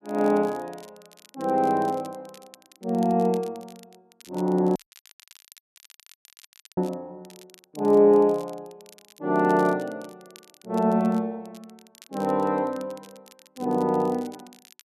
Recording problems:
crackle; vinyl, SNR 27 dB
audio cutting out; at 5 s for 2 s

